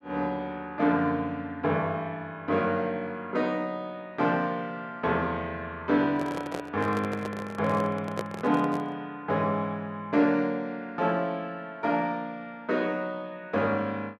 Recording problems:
microphone handling noise; from 6 to 9 s; peak +1 dB vs average level

